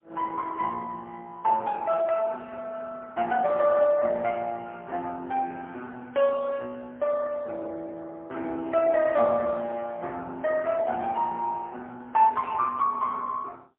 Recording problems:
phone line; 280 Hz to 3.4 kHz, AMR-NB, then MP3

